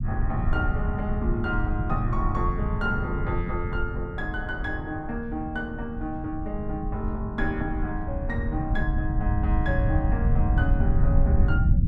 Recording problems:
rumble; below 100 Hz, SNR -3 dB

